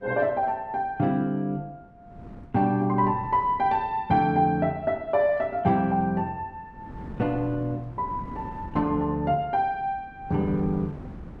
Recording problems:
wind on the microphone; below 290 Hz, SNR 18 dB

